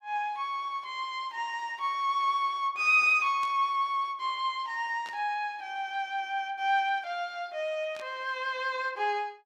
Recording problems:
static burst; at 3.5 s, at 5 s and at 8 s; peak -13 dB vs average level

